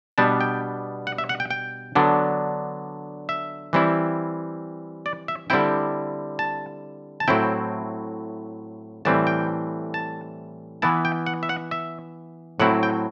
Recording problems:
none

